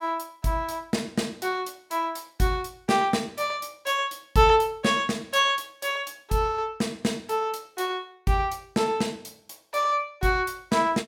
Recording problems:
none

